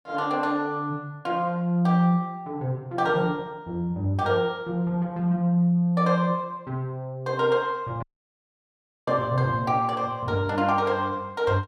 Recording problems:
audio cutting out; at 8 s for 1 s

